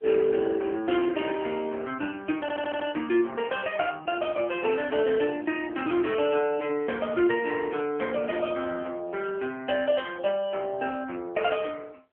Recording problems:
telephone audio; 300 Hz to 3.1 kHz, AMR-NB
audio stuttering; at 2.5 s

